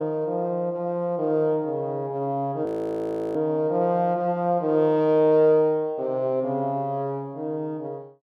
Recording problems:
frozen audio; at 2.5 s for 0.5 s

